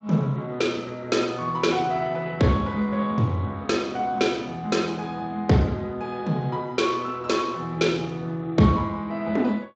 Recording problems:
codec artefacts; Speex, log-spectral distance 3 dB

